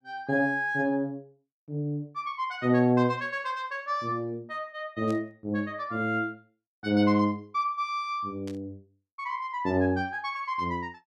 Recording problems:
static burst; at 5 s and at 8.5 s; peak -13 dB vs average level

